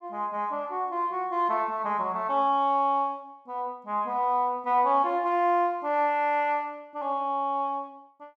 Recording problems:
none

